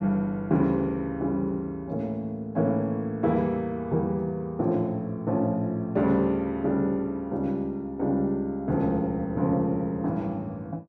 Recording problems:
none

